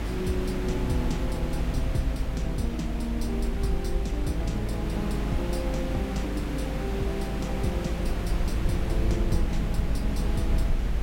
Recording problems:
background hiss; slope -6 dB per octave, SNR 3 dB
rumble; below 54 Hz, SNR 0 dB
wind noise; below 490 Hz, SNR 24 dB

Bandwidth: 16.5 kHz